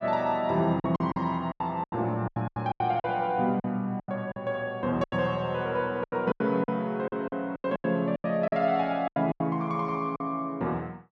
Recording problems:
packet loss; 14% of the sound replaced, filled with silence

